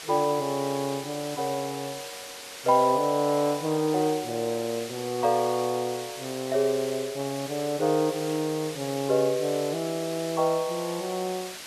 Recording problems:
background hiss; slope 0 dB per octave, SNR 11 dB

